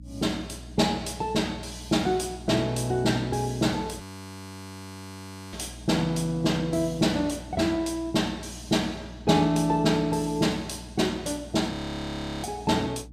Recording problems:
hum; 60 Hz, harmonics up to 480 Hz, SNR 18 dB
audio freezing; at 4 s for 1.5 s and at 12 s for 0.5 s

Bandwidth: 14.5 kHz